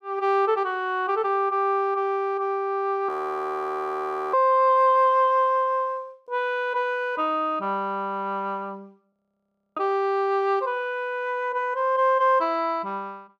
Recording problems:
audio freezing; at 3 s for 1 s and at 9 s for 0.5 s

